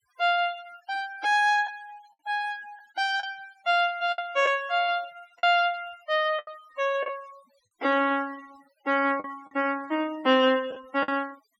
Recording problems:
noise reduction artefacts; signal-to-artefact ratio 23 dB
lost packets; 5% of the sound replaced, filled with the last packet

